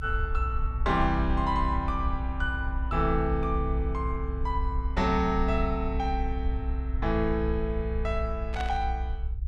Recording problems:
rumble; below 62 Hz, strongest tone 60 Hz, SNR 2 dB
burst of static; at 8.5 s; peak -4 dB vs average level

